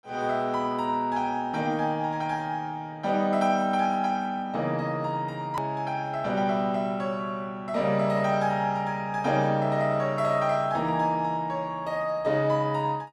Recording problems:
hard cut with a click; at 5.5 s

